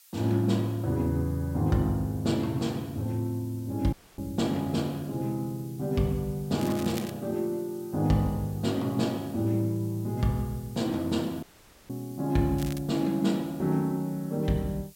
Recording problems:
background hiss; slope +4 dB per octave, SNR 23 dB
dropout; at 4 s and at 11 s
crackle; at 6.5 s and at 13 s; loose cable, SNR 15 dB

